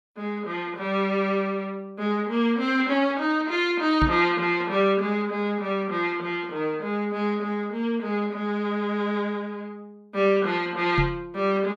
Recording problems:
microphone bump; at 4 s and at 11 s; peak +3 dB vs average level

